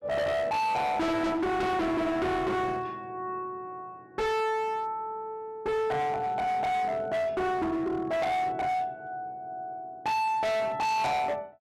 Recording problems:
distorted audio; hard clipping, signal-to-distortion ratio 6 dB

